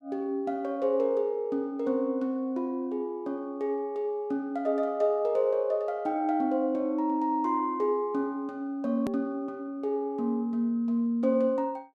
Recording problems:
hard cut with a click; at 9 s

